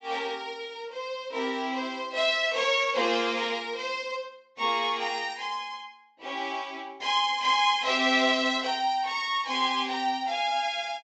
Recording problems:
treble cut off; nothing above 8 kHz

